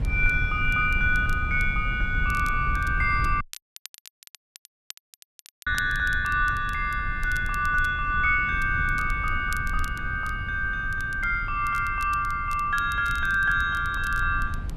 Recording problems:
low-frequency rumble; below 86 Hz, SNR 9 dB
crackle; vinyl, SNR 22 dB
audio cutting out; at 3.5 s for 2.5 s

